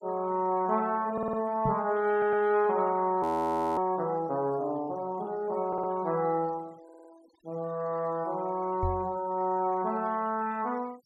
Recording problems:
noise reduction artefacts; signal-to-artefact ratio 26 dB
audio stuttering; 4 times, first at 1 s
microphone thump; at 1.5 s and at 9 s; peak 0 dB vs average level
audio freezing; at 3 s for 0.5 s

